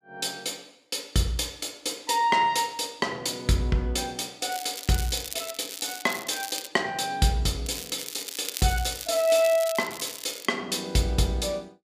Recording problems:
crackle; from 4.5 to 6.5 s and from 7.5 to 10 s; loose cable, SNR 9 dB

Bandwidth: 15 kHz